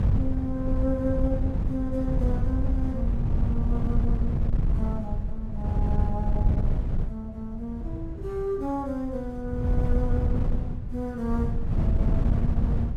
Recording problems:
wind noise; below 110 Hz, SNR -5 dB

